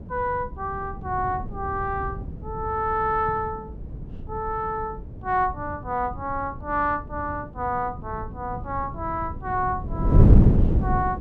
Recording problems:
wind noise; below 190 Hz, SNR -3 dB

